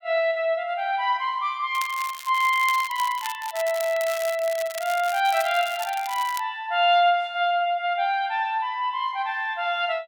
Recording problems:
crackle; from 1.5 to 6.5 s; loose cable, SNR 13 dB

